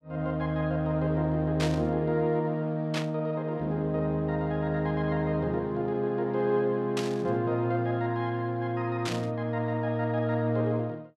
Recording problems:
burst of static; 4 times, first at 1.5 s; peak -1 dB vs average level

